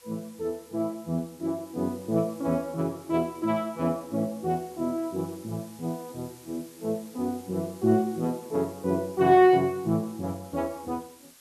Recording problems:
hiss; slope 0 dB per octave, SNR 23 dB

